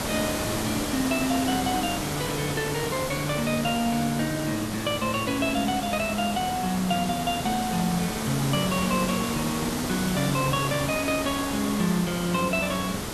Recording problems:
background hiss; slope -4 dB per octave, SNR 4 dB
crackle; from 3.5 to 5.5 s; loose cable, SNR 24 dB

